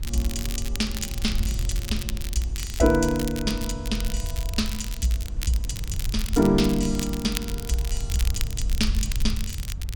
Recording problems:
rumble; below 64 Hz, SNR 5 dB
wind on the microphone; below 180 Hz, SNR 17 dB
crackle; vinyl, SNR 10 dB

